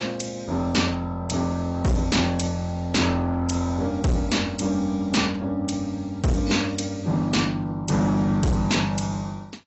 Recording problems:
lossy codec; AAC, log-spectral distance 4 dB, nothing above 7.8 kHz
distorted audio; hard clipping, uneven, signal-to-distortion ratio 7 dB

